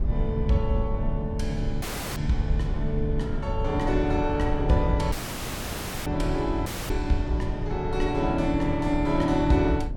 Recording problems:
low-frequency rumble; below 98 Hz, SNR 5 dB
dropout; at 2 s, at 5 s for 1 s and at 6.5 s

